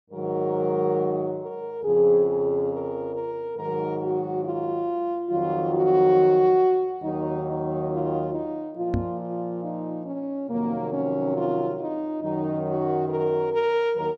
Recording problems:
microphone thump; at 9 s; peak +1 dB vs average level

